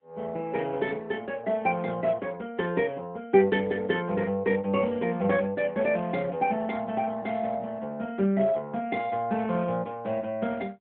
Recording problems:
telephone audio; 170 Hz to 3.5 kHz, AMR-NB

